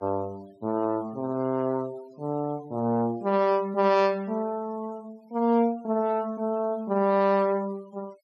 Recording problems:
denoising artefacts; signal-to-artefact ratio 27 dB

